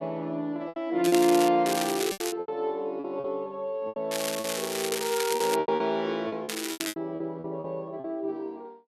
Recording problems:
lost packets; 12% of the sound replaced, filled with repeated pitch periods
crackling; 4 times, first at 1 s; loose cable, SNR 5 dB

